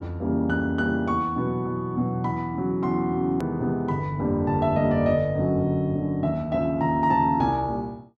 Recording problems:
click at an edit; at 3.5 s

